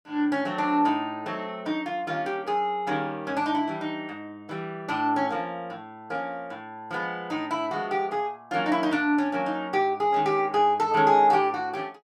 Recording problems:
none

